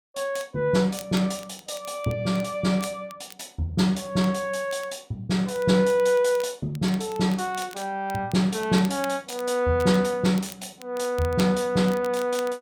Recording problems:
crackle; vinyl, SNR 21 dB

